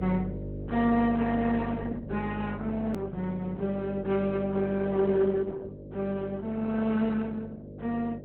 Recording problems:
lossy compression; Opus, log-spectral distance 2 dB, nothing above 19.5 kHz
mains hum; 50 Hz, harmonics up to 600 Hz, SNR 11 dB
edit click; at 3 s

